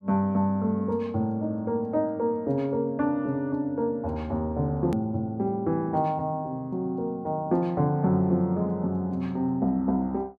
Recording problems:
click at an edit; at 5 s

